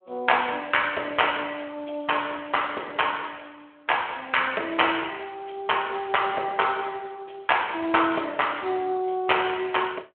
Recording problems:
telephone audio; 300 Hz to 3.3 kHz, Speex

